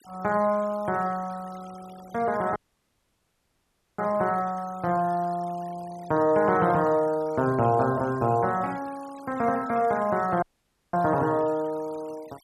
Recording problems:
noise reduction artefacts; signal-to-artefact ratio 24 dB
audio cutting out; at 2.5 s for 1.5 s and at 10 s for 0.5 s

